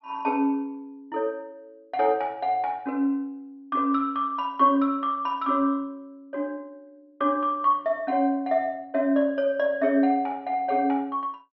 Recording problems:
low-pass filter; nothing above 5.5 kHz

